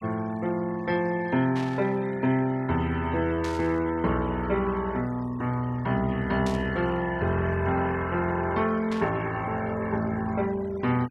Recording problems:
noise reduction artefacts; signal-to-artefact ratio 20 dB
burst of static; 4 times, first at 1.5 s; peak -8 dB vs average level

